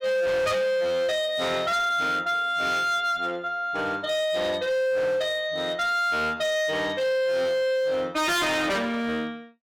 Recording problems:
distorted audio; hard clipping, signal-to-distortion ratio 7 dB

